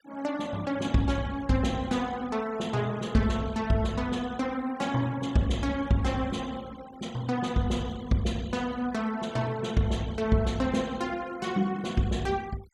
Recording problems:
noise reduction artefacts; signal-to-artefact ratio 21 dB

